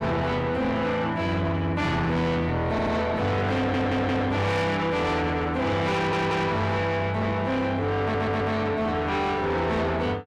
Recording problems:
distortion; soft clipping, signal-to-distortion ratio 7 dB
audio stuttering; 4 times, first at 2.5 s

